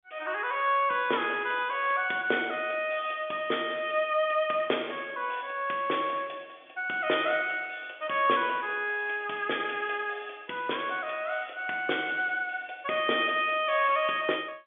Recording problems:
telephone audio; 280 Hz to 3.5 kHz, G.711

